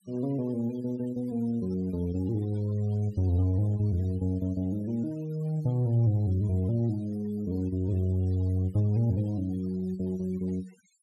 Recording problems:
noise reduction artefacts; signal-to-artefact ratio 24 dB

